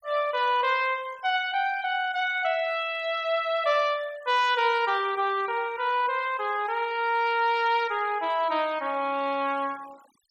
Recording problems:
denoising artefacts; signal-to-artefact ratio 23 dB

